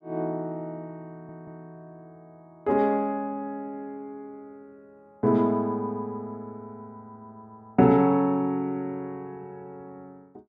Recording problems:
audio stuttering; at 1 s

